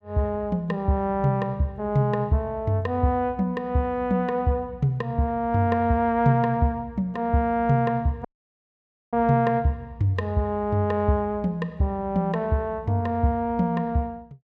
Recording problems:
dropout; at 8.5 s for 1 s

